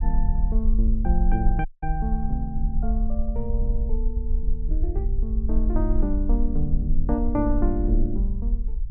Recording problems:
treble cut off; nothing above 3.1 kHz
rumble; below 46 Hz, strongest tone 22 Hz, SNR -2 dB
audio cutting out; at 1.5 s

